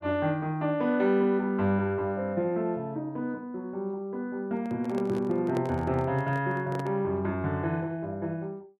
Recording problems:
handling noise; from 4.5 to 7 s; peak -3 dB vs average level

